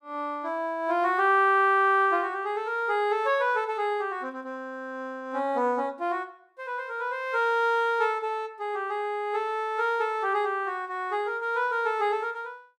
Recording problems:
none

